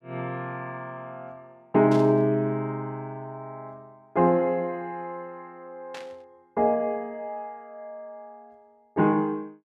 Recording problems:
burst of static; at 2 s and at 6 s; peak -11 dB vs average level

